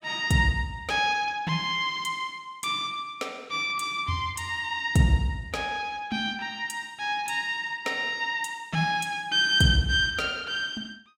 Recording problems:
none

